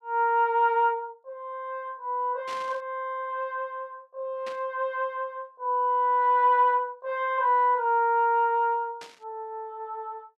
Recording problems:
burst of static; at 2.5 s, at 4.5 s and at 9 s; peak -12 dB vs average level

